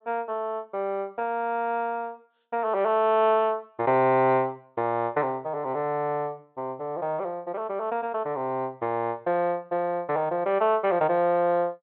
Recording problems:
treble missing; nothing above 4 kHz

